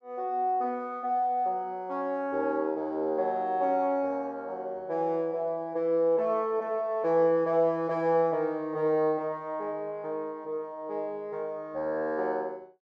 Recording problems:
none

